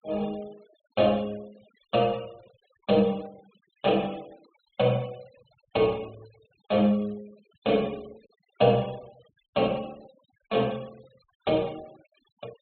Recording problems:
treble missing; nothing above 4.2 kHz
denoising artefacts; signal-to-artefact ratio 27 dB

